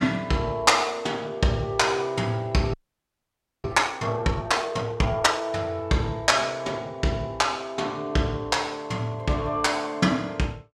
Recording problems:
frozen audio; at 2.5 s for 1 s

